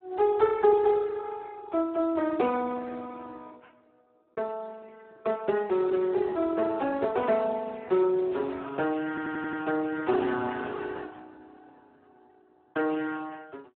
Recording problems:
phone line; 260 Hz to 2.2 kHz, Speex
audio stuttering; at 9 s

